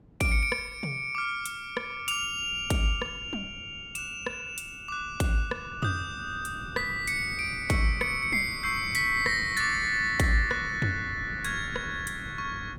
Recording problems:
wind noise; below 250 Hz, SNR 16 dB

